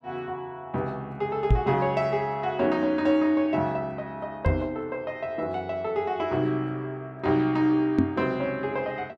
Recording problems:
microphone bump; at 1.5 s, at 4.5 s and at 8 s; peak +8 dB vs average level

